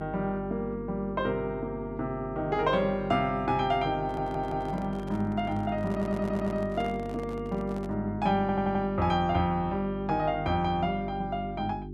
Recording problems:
hum; 50 Hz, harmonics up to 400 Hz, SNR 10 dB
stutter; at 4 s, at 6 s and at 8.5 s
handling noise; from 4 to 8 s; peak -11 dB vs average level

